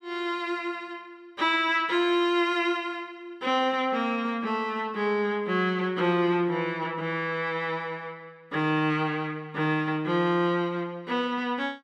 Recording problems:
none

